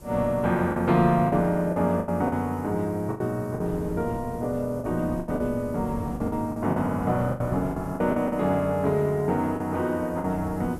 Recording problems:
background hiss; SNR 28 dB
wind on the microphone; below 310 Hz, SNR 14 dB
packet loss; 9% of the sound replaced, filled with the last packet

